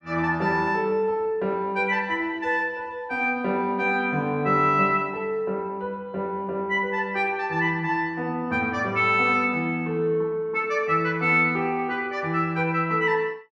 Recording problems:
none

